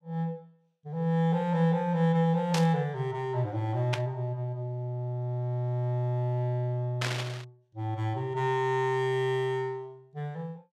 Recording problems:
static burst; at 2.5 s, at 4 s and at 7 s; peak +2 dB vs average level

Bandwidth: 14.5 kHz